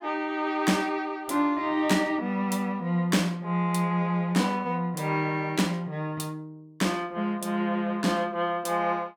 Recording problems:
none

